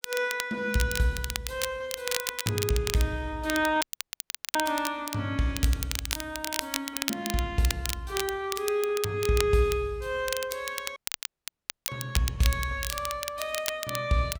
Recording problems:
crackle; vinyl, SNR 5 dB
audio cutting out; at 4 s for 0.5 s and at 11 s for 1 s

